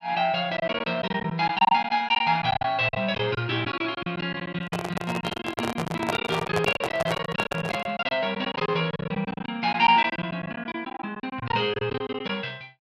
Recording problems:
lost packets; 16% of the sound replaced, filled with silence
handling noise; from 4.5 to 8 s; peak +4 dB vs average level

